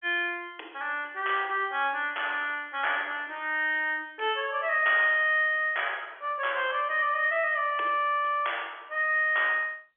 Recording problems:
telephone audio; 300 Hz to 3.4 kHz, G.711

